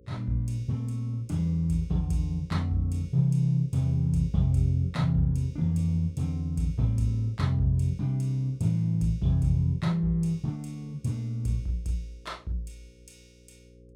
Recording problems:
mains hum; 60 Hz, harmonics up to 540 Hz, SNR 28 dB

